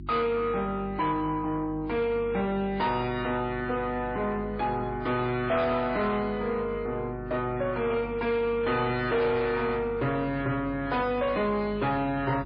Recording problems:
lossy codec; MP3, log-spectral distance 2 dB, nothing above 4.2 kHz
distorted audio; soft clipping, signal-to-distortion ratio 10 dB
hum; 50 Hz, harmonics up to 350 Hz, SNR 14 dB

